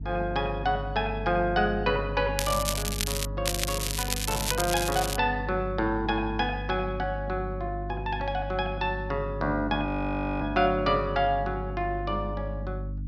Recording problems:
electrical hum; 50 Hz, harmonics up to 300 Hz, SNR 7 dB
crackle; at 2.5 s and from 3.5 to 5 s; loose cable, SNR 2 dB
frozen audio; at 10 s for 0.5 s

